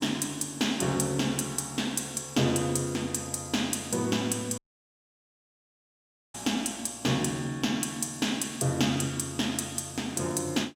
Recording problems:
audio cutting out; at 4.5 s for 2 s

